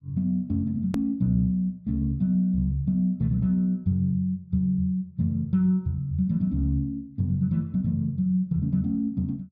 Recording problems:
hard cut with a click; at 1 s

